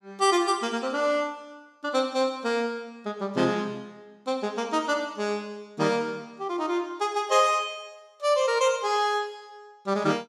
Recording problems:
none

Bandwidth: 14.5 kHz